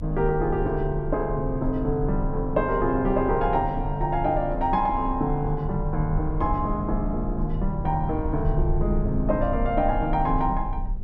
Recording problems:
hum; 50 Hz, harmonics up to 700 Hz, SNR 19 dB
rumble; below 54 Hz, strongest tone 26 Hz, SNR 7 dB

